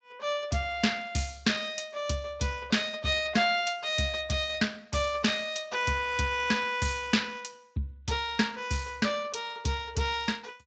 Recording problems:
codec artefacts; Speex, log-spectral distance 4 dB, nothing above 7.6 kHz

